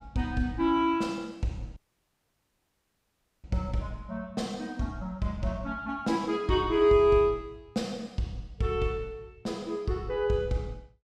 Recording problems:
audio cutting out; at 2 s for 1.5 s

